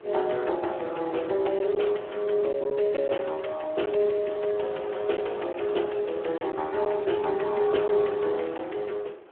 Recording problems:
phone line; 300 Hz to 3.3 kHz, Speex
wind on the microphone; below 880 Hz, SNR 21 dB
lost packets; 2% of the sound replaced, filled with silence

